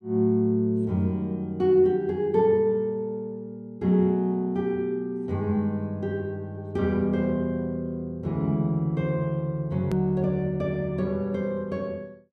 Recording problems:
hard cut with a click; at 10 s

